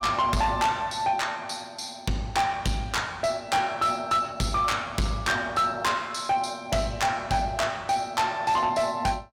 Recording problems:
distorted audio; soft clipping, signal-to-distortion ratio 10 dB

